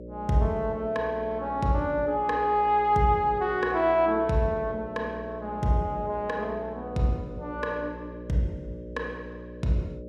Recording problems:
mains hum; 60 Hz, harmonics up to 600 Hz, SNR 13 dB

